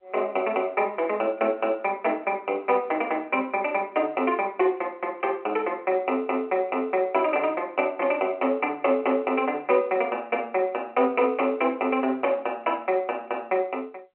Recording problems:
telephone audio; 220 Hz to 3.1 kHz, G.711

